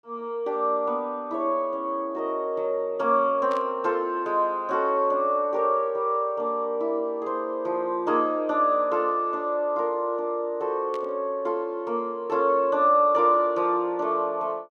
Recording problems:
burst of static; at 3.5 s and at 11 s; peak -14 dB vs average level

